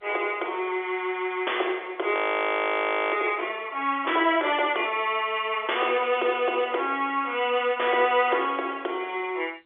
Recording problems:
telephone audio; 300 Hz to 3.7 kHz, G.711
audio freezing; at 2 s for 1 s

